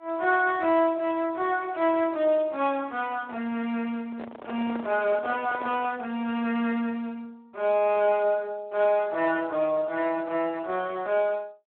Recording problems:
telephone audio; 240 Hz to 3.6 kHz, Speex
microphone handling noise; from 4 to 6 s; peak -7 dB vs average level

